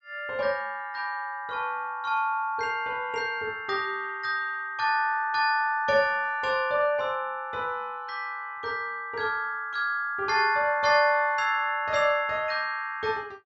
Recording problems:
treble missing; nothing above 8 kHz

